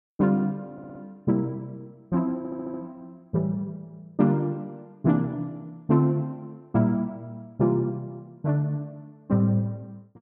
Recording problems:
audio stuttering; at 0.5 s and at 2.5 s

